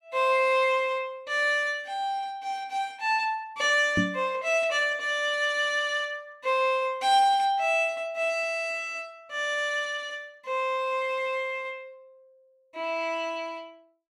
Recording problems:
knock on the microphone; at 4 s; peak +4 dB vs average level

